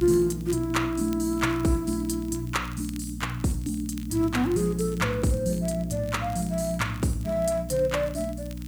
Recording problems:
electrical hum; 60 Hz, harmonics up to 300 Hz, SNR 9 dB
hiss; slope -1 dB per octave, SNR 26 dB
crackling; vinyl, SNR 24 dB

